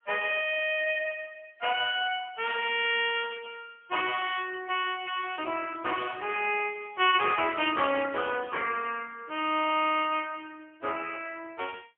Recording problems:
phone line; 280 Hz to 3.3 kHz, AMR-NB, then MP3

